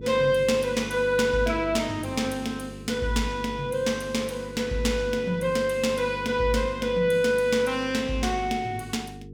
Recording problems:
electrical hum; 50 Hz, harmonics up to 450 Hz, SNR 15 dB

